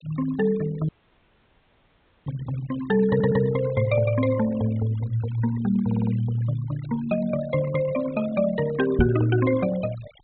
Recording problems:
treble cut off; nothing above 4 kHz
noise reduction artefacts; signal-to-artefact ratio 17 dB
dropout; at 1 s for 1.5 s
stutter; at 3 s and at 6 s
knock on the microphone; at 9 s; peak +7 dB vs average level

